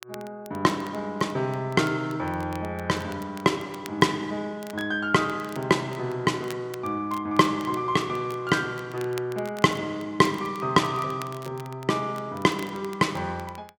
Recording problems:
crackling; vinyl, SNR 21 dB

